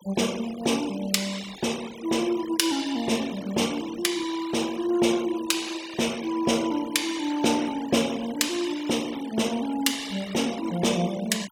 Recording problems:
denoising artefacts; signal-to-artefact ratio 15 dB

